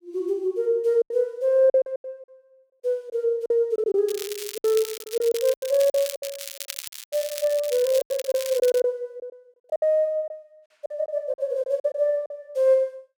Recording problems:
lost packets; 11% of the sound replaced, filled with silence
crackle; from 4 to 9 s; loose cable, SNR 11 dB

